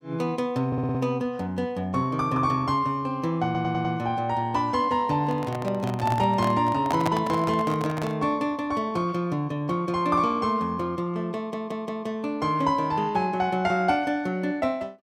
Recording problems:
stutter; at 0.5 s, at 3.5 s and at 11 s
handling noise; from 5 to 8 s; peak +2 dB vs average level

